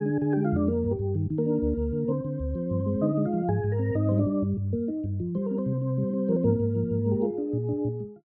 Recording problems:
none

